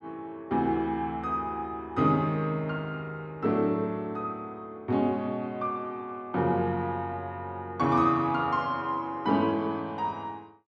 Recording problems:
none

